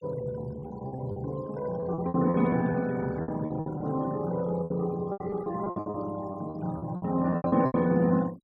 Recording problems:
denoising artefacts; signal-to-artefact ratio 21 dB
packet loss; 15% of the sound replaced, filled with repeated pitch periods

